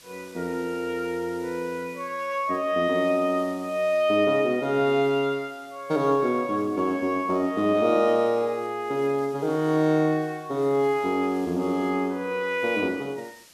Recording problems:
background hiss; slope 0 dB per octave, SNR 27 dB

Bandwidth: 13.5 kHz